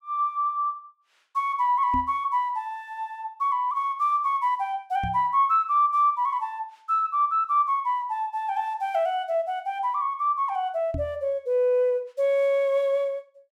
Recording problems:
microphone thump; at 2 s, at 5 s and at 11 s; peak -4 dB vs average level

